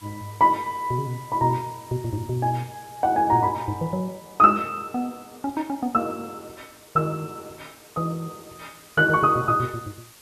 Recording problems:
hiss; slope 0 dB per octave, SNR 24 dB

